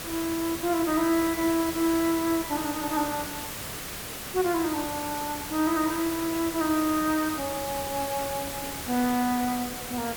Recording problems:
background hiss; slope -2 dB per octave, SNR 6 dB

